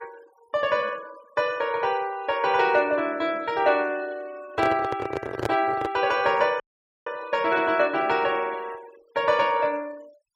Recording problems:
noise reduction artefacts; signal-to-artefact ratio 23 dB
handling noise; from 4.5 to 6 s; peak +1 dB vs average level
dropout; at 6.5 s

